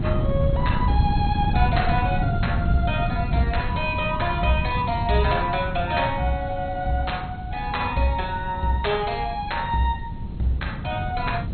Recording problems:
lossy codec; MP2, log-spectral distance 3 dB, nothing above 4.2 kHz
hiss; SNR 30 dB
wind noise; below 160 Hz, SNR 3 dB

